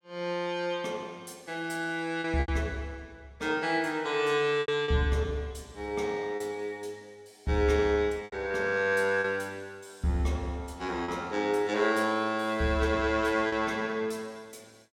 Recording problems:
lost packets; 3% of the sound replaced, filled with repeated pitch periods

